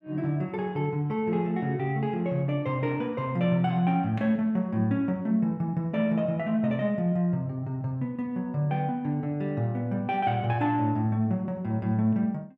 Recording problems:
none

